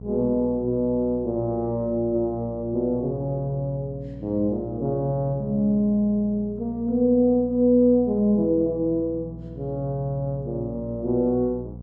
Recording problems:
hum; 60 Hz, harmonics up to 540 Hz, SNR 15 dB

